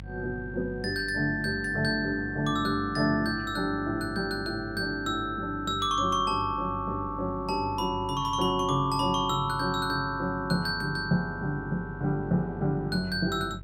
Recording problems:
hum; 50 Hz, harmonics up to 350 Hz, SNR 15 dB

